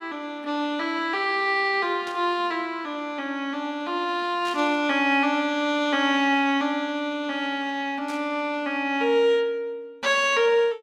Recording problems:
burst of static; at 2 s, at 4.5 s and at 8 s; peak -11 dB vs average level

